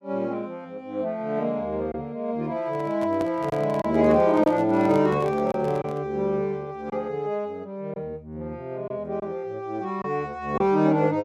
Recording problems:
packet loss; 2% of the sound replaced, filled with silence
handling noise; from 2.5 to 6 s; peak -7 dB vs average level

